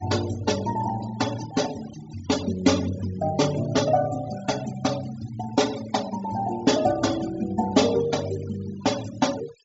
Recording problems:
low-pass filter; nothing above 8 kHz
denoising artefacts; signal-to-artefact ratio 14 dB

